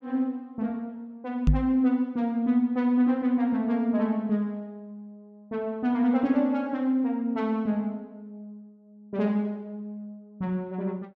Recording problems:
knock on the microphone; at 1.5 s; peak +8 dB vs average level

